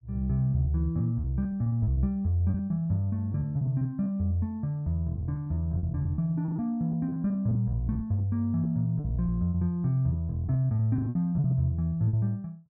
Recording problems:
packet loss; 14% of the sound replaced, filled with repeated pitch periods

